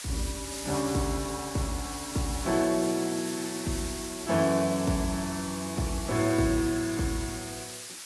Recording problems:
lossy compression; AAC, log-spectral distance 12 dB
background hiss; slope +3 dB per octave, SNR 8 dB

